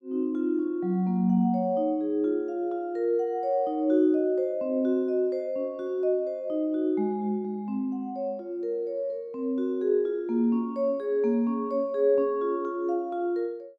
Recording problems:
none

